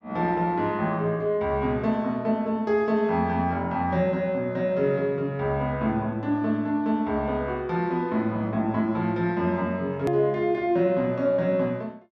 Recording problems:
hard cut with a click; at 10 s

